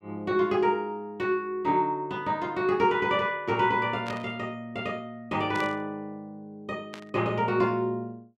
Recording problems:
static burst; at 4 s, at 5.5 s and at 7 s; peak -7 dB vs average level

